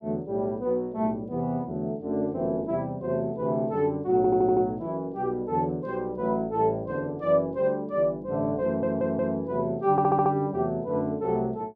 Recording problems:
stutter; at 4 s, at 8.5 s and at 10 s

